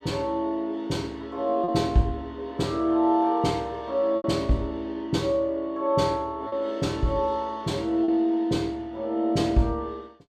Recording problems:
lost packets; 2% of the sound replaced, filled with repeated pitch periods

